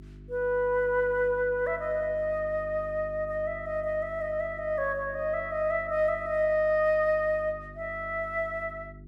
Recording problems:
hum; 50 Hz, harmonics up to 400 Hz, SNR 18 dB

